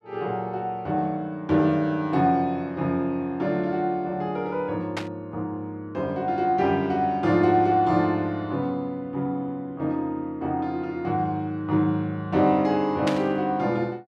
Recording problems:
static burst; at 5 s and at 13 s; peak -1 dB vs average level

